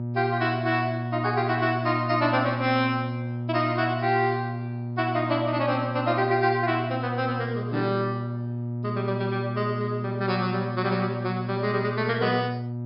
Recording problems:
treble cut off; nothing above 5.5 kHz
hum; 60 Hz, harmonics up to 600 Hz, SNR 5 dB

